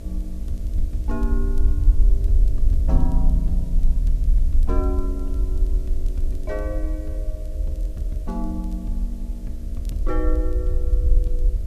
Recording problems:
electrical hum; 60 Hz, harmonics up to 660 Hz, SNR 9 dB
hiss; slope -2 dB per octave, SNR 21 dB
rumble; below 52 Hz, SNR -8 dB
crackle; vinyl, SNR 27 dB

